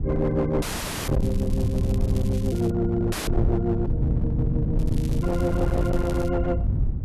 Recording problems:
distortion; hard clipping, uneven, signal-to-distortion ratio 11 dB
wind noise; below 120 Hz, SNR 2 dB
audio cutting out; at 0.5 s and at 3 s
crackle; from 1 to 2.5 s and from 5 to 6.5 s; loose cable, SNR 20 dB

